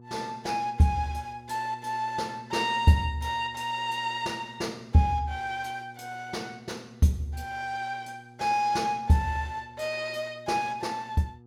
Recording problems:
hum; 60 Hz, harmonics up to 840 Hz, SNR 22 dB

